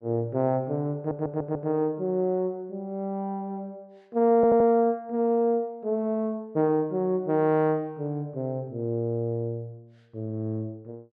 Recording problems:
stutter; at 1 s and at 4.5 s

